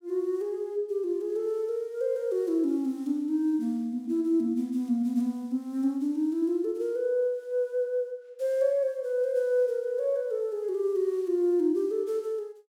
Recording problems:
none

